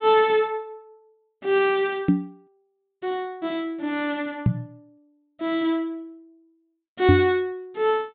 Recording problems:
low-pass filter; nothing above 4 kHz
microphone thump; at 2 s, at 4.5 s and at 7 s; peak +9 dB vs average level

